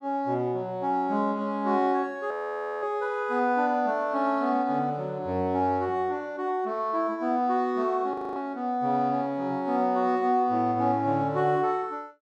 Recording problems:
frozen audio; at 2.5 s for 0.5 s and at 8 s

